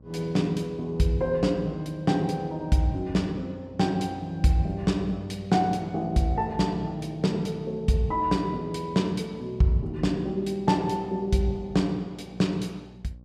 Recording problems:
hum; 60 Hz, harmonics up to 600 Hz, SNR 23 dB

